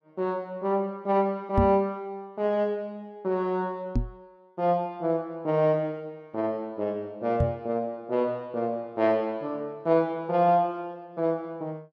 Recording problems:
microphone thump; at 1.5 s, at 4 s and at 7.5 s; peak +7 dB vs average level

